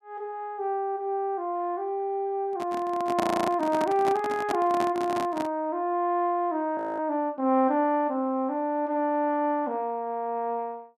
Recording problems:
microphone handling noise; from 2.5 to 5.5 s; peak +1 dB vs average level
audio freezing; at 3 s and at 7 s

